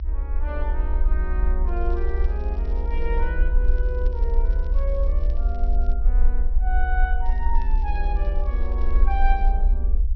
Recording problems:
treble cut off; nothing above 5.8 kHz
rumble; below 46 Hz, SNR -9 dB
crackle; from 1.5 to 3.5 s, from 3.5 to 6 s and from 7.5 to 9.5 s; loose cable, SNR 26 dB

